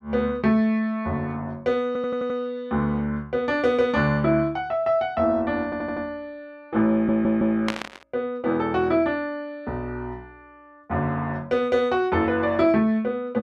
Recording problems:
audio stuttering; at 2 s, at 5.5 s and at 7 s
static burst; at 7.5 s; peak +1 dB vs average level

